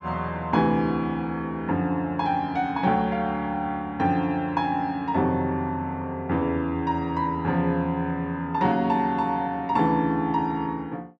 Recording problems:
none

